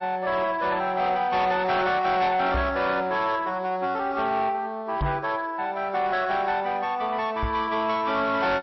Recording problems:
lossy compression; MP3, log-spectral distance 2 dB, nothing above 5.7 kHz
distortion; soft clipping, signal-to-distortion ratio 11 dB
microphone bump; at 2.5 s, at 5 s and at 7.5 s; peak +1 dB vs average level

